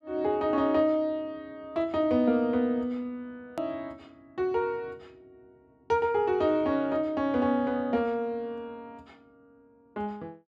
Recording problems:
hard cut with a click; at 3.5 s

